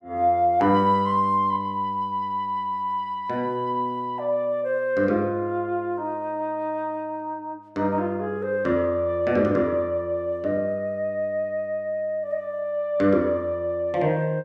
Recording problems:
none

